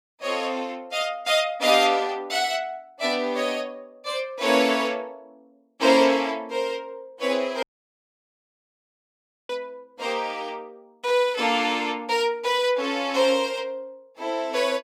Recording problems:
audio cutting out; at 7.5 s for 2 s

